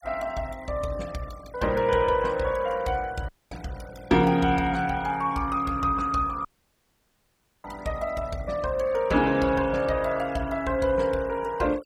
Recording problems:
noise reduction artefacts; signal-to-artefact ratio 22 dB
audio cutting out; at 3.5 s and at 6.5 s for 1 s

